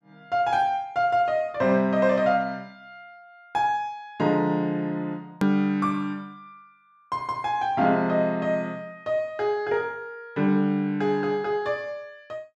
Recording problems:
edit click; at 5.5 s

